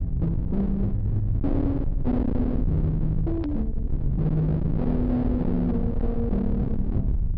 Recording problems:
treble cut off; nothing above 5.5 kHz
distortion; hard clipping, signal-to-distortion ratio 7 dB
rumble; below 130 Hz, SNR 2 dB
hard cut with a click; at 3.5 s

